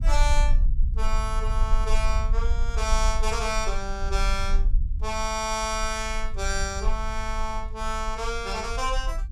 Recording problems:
low-frequency rumble; below 46 Hz, strongest tone 22 Hz, SNR 0 dB

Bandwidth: 14.5 kHz